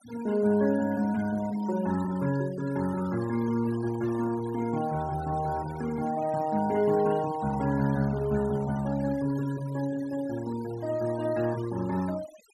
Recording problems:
noise reduction artefacts; signal-to-artefact ratio 17 dB

